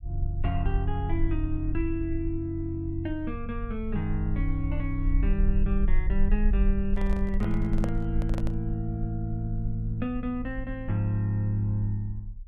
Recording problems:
low-frequency rumble; below 46 Hz, SNR 3 dB
microphone handling noise; from 7 to 8.5 s; peak 0 dB vs average level

